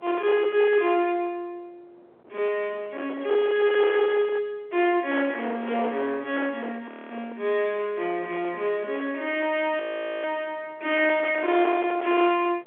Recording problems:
phone line; 300 Hz to 3.3 kHz, G.711
distortion; hard clipping, signal-to-distortion ratio 14 dB
wind on the microphone; below 1.3 kHz, SNR 14 dB
audio freezing; at 7 s and at 10 s

